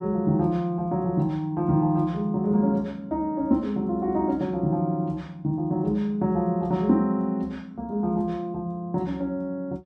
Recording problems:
none

